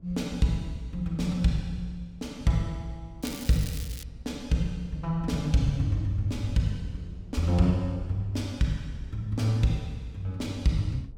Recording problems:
rumble; below 96 Hz, SNR 20 dB
crackling; at 3 s; loose cable, SNR 13 dB

